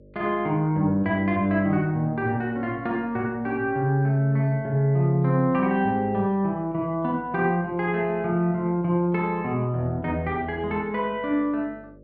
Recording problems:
hum; 50 Hz, harmonics up to 600 Hz, SNR 26 dB

